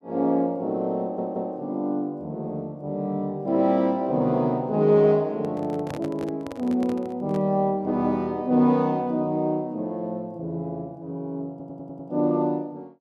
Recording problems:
audio stuttering; at 1 s and at 12 s
microphone handling noise; from 5.5 to 7.5 s; peak -7 dB vs average level

